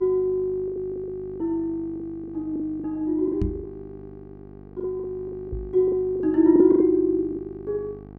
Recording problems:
hum; 50 Hz, harmonics up to 1.3 kHz, SNR 19 dB
lost packets; 12% of the sound replaced, filled with the last packet
knock on the microphone; at 3.5 s and at 5.5 s; peak +1 dB vs average level

